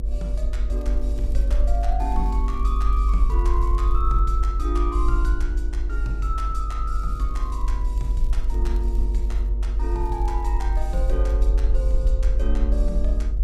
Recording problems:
electrical hum; 60 Hz, harmonics up to 1.2 kHz, SNR 14 dB
low-frequency rumble; below 50 Hz, strongest tone 48 Hz, SNR -8 dB
crackle; from 1 to 4 s, from 7 to 9.5 s and from 10 to 12 s; loose cable, SNR 26 dB

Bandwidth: 15 kHz